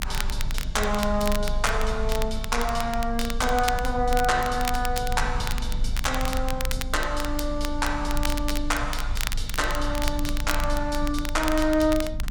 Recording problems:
low-frequency rumble; below 50 Hz, strongest tone 24 Hz, SNR 6 dB
crackling; vinyl, SNR 8 dB

